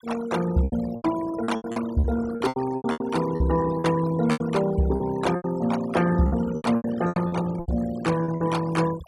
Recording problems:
noise reduction artefacts; signal-to-artefact ratio 15 dB
packet loss; 16% of the sound replaced, filled with repeated pitch periods

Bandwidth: 15.5 kHz